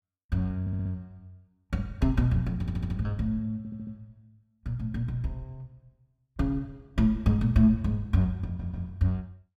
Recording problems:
stutter; 4 times, first at 0.5 s

